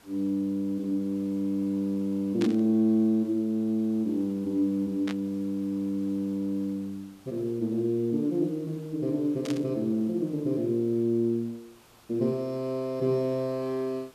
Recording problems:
hiss; slope -3 dB per octave, SNR 28 dB
static burst; at 2.5 s, at 5 s and at 9.5 s; peak -6 dB vs average level

